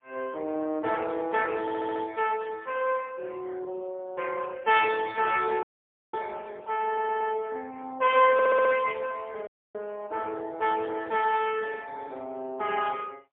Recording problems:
phone line; 280 Hz to 3.5 kHz, AMR-NB, then MP3
audio stuttering; at 1.5 s, at 7 s and at 8.5 s
audio cutting out; at 5.5 s for 0.5 s and at 9.5 s

